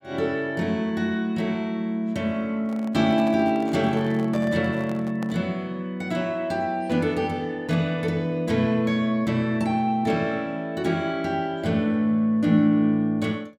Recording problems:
handling noise; from 2.5 to 5.5 s; peak -9 dB vs average level

